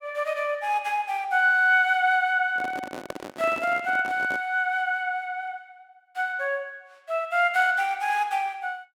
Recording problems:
microphone handling noise; from 2.5 to 4.5 s; peak -6 dB vs average level

